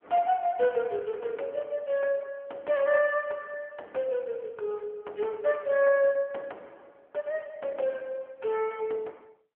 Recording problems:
telephone audio; 320 Hz to 3.4 kHz, AMR-NB

